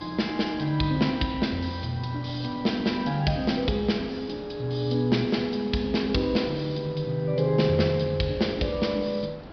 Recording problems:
treble cut off; nothing above 5.5 kHz
hiss; SNR 17 dB

